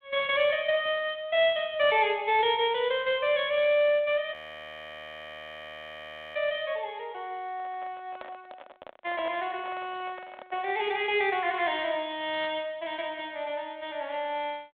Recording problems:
phone line; 340 Hz to 3.7 kHz, G.726
audio freezing; at 4.5 s for 2 s
microphone handling noise; from 7.5 to 11 s; peak -9 dB vs average level

